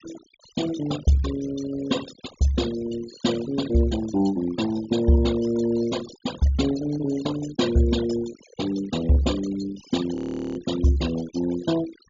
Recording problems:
low-pass filter; nothing above 7.2 kHz
denoising artefacts; signal-to-artefact ratio 13 dB
audio freezing; at 10 s

